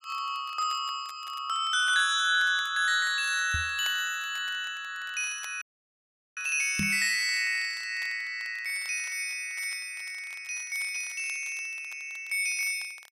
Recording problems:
crackle; vinyl, SNR 24 dB
microphone bump; at 3.5 s and at 7 s; peak -1 dB vs average level
dropout; at 5.5 s for 1 s

